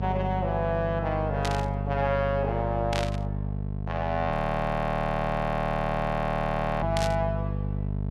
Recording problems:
hum; 50 Hz, harmonics up to 700 Hz, SNR 3 dB
burst of static; at 1.5 s, at 3 s and at 7 s; peak +1 dB vs average level
frozen audio; at 4.5 s for 2.5 s

